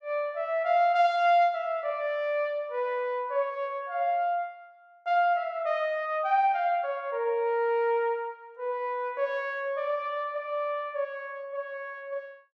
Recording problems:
none

